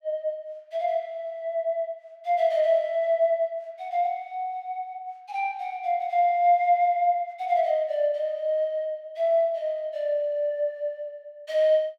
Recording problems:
none

